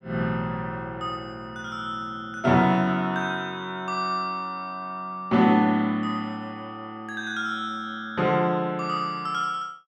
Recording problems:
none

